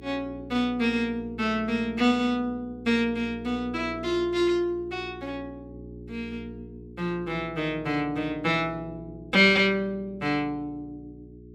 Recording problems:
hum; 60 Hz, harmonics up to 420 Hz, SNR 17 dB

